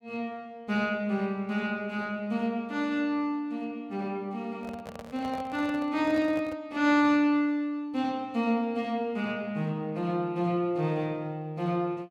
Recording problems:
handling noise; from 4.5 to 6.5 s; peak -9 dB vs average level

